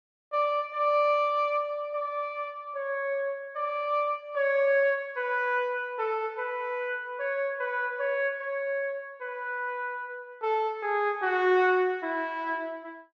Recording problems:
none

